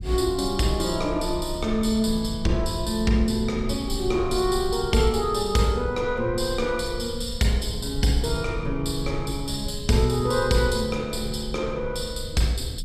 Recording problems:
rumble; below 84 Hz, SNR 11 dB

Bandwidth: 14.5 kHz